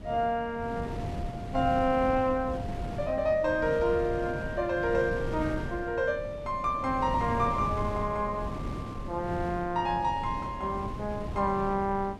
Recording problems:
wind noise; below 280 Hz, SNR 8 dB

